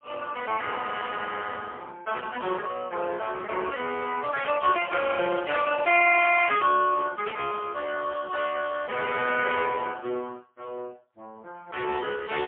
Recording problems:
phone line; 300 Hz to 3.3 kHz, AMR-NB, then MP3

